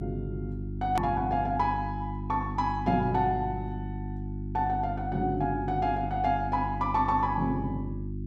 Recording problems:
hum; 50 Hz, harmonics up to 350 Hz, SNR 6 dB
hard cut with a click; at 1 s

